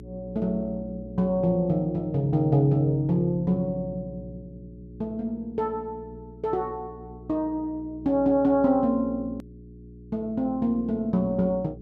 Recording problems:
electrical hum; 60 Hz, harmonics up to 420 Hz, SNR 17 dB
edit click; at 9.5 s

